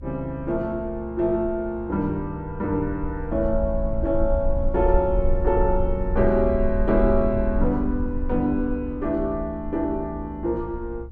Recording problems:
rumble; below 66 Hz, strongest tone 20 Hz, SNR 6 dB

